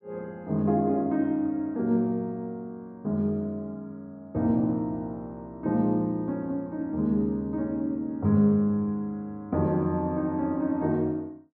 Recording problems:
none

